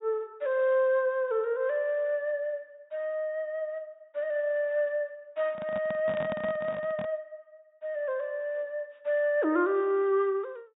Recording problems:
treble cut off; nothing above 4 kHz
handling noise; from 5.5 to 7 s; peak -3 dB vs average level

